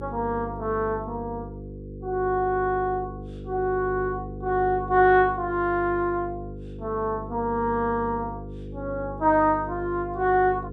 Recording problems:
electrical hum; 50 Hz, harmonics up to 500 Hz, SNR 12 dB

